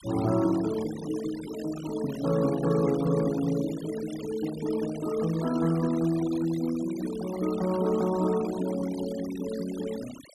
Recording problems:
noise reduction artefacts; signal-to-artefact ratio 16 dB

